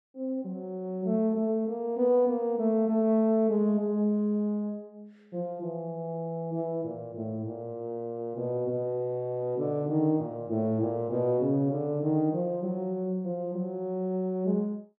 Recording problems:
none

